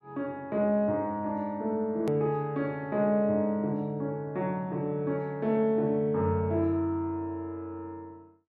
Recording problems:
edit click; at 2 s

